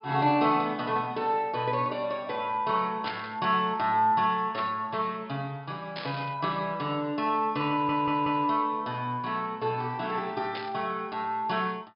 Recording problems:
treble missing; nothing above 5.5 kHz
static burst; 4 times, first at 3 s; peak -3 dB vs average level
audio stuttering; at 7.5 s

